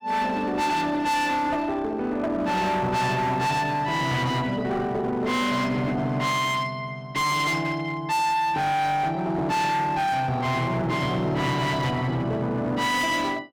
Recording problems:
distortion; hard clipping, uneven, signal-to-distortion ratio 7 dB

